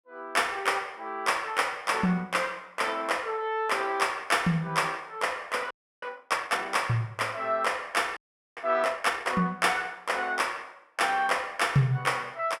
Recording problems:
frozen audio; at 5.5 s and at 8 s

